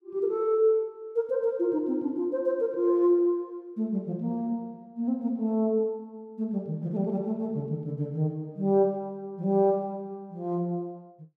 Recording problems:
none

